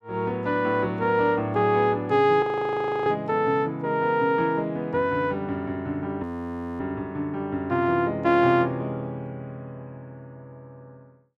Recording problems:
audio freezing; at 2.5 s for 0.5 s and at 6 s for 0.5 s

